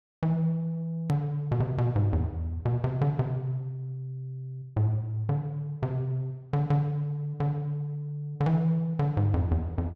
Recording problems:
hard cut with a click; at 1 s

